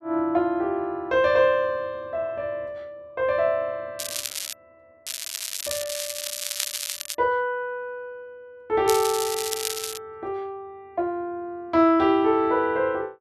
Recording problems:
crackling; at 4 s, from 5 to 7 s and from 9 to 10 s; loose cable, SNR 5 dB

